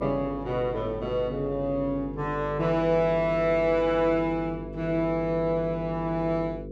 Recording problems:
hum; 50 Hz, harmonics up to 500 Hz, SNR 12 dB

